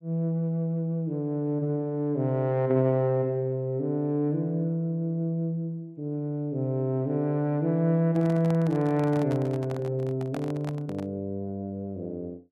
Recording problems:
handling noise; from 8 to 11 s; peak -8 dB vs average level

